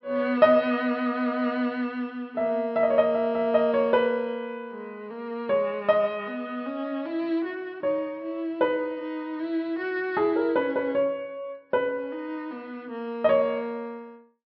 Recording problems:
treble missing; nothing above 5.5 kHz

